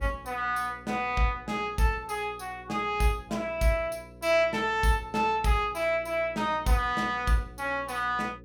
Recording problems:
mains hum; 60 Hz, harmonics up to 540 Hz, SNR 22 dB

